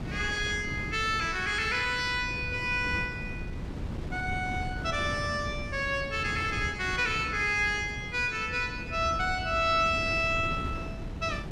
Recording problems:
wind on the microphone; below 260 Hz, SNR 9 dB

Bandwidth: 14.5 kHz